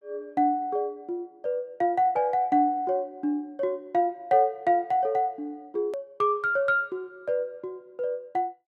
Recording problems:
hard cut with a click; at 6 s

